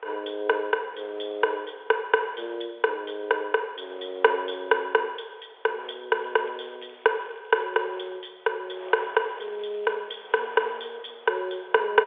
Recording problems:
phone line; 320 Hz to 3.6 kHz, G.711
wind noise; below 1.5 kHz, SNR 23 dB
crackling; from 6 to 8 s and from 9 to 11 s; loose cable, SNR 27 dB

